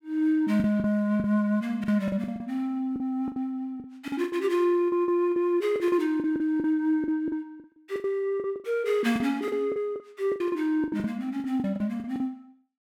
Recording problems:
packet loss; 15% of the sound replaced, filled with the last packet

